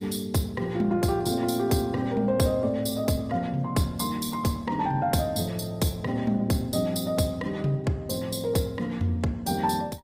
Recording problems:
lossy codec; Opus, log-spectral distance 4 dB, nothing above 15.5 kHz

